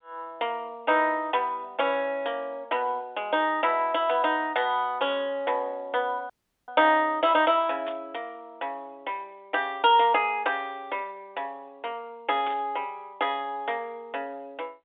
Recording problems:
phone line; 240 Hz to 3.7 kHz, G.711
audio cutting out; at 6.5 s
static burst; at 8 s and at 12 s; peak -8 dB vs average level

